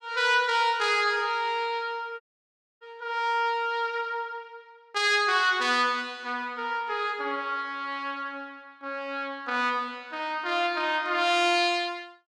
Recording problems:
dropout; at 2 s for 0.5 s

